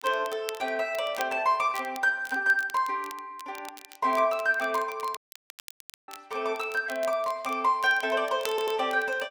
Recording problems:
crackling; vinyl, SNR 19 dB
audio cutting out; at 5 s for 1 s
audio stuttering; at 8.5 s

